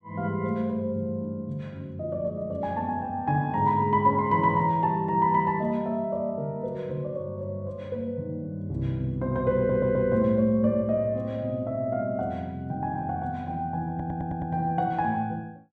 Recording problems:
audio stuttering; at 9.5 s and at 14 s

